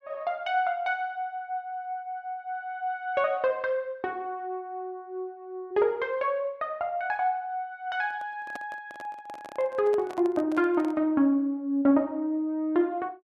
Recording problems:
microphone handling noise; from 8 to 11 s; peak -8 dB vs average level

